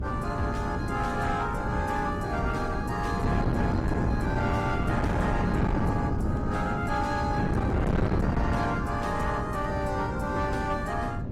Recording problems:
lossy codec; Opus, log-spectral distance 2 dB
distorted audio; soft clipping, signal-to-distortion ratio 11 dB
electrical hum; 60 Hz, harmonics up to 660 Hz, SNR 10 dB
wind on the microphone; below 300 Hz, SNR 0 dB

